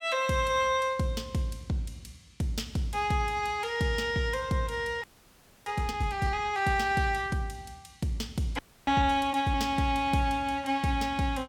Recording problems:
audio freezing; at 5 s for 0.5 s and at 8.5 s

